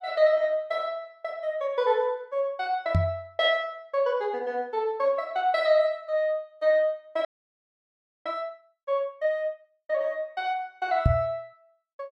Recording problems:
microphone bump; at 3 s and at 11 s; peak +8 dB vs average level
frozen audio; at 7.5 s for 1 s

